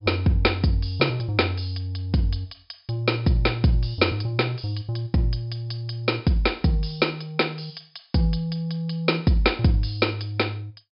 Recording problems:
treble cut off; nothing above 5.5 kHz

